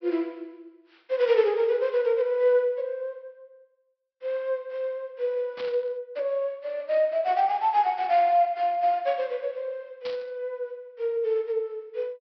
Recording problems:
treble missing; nothing above 5.5 kHz
static burst; at 5.5 s and at 10 s; peak -10 dB vs average level

